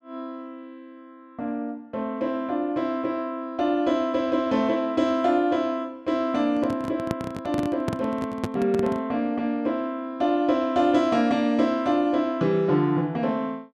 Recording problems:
handling noise; from 6.5 to 9 s; peak +1 dB vs average level

